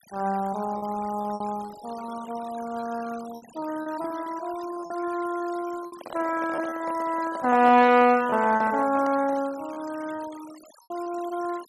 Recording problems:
denoising artefacts; signal-to-artefact ratio 20 dB
packet loss; 8% of the sound replaced, filled with repeated pitch periods
handling noise; from 6 to 9.5 s; peak -6 dB vs average level

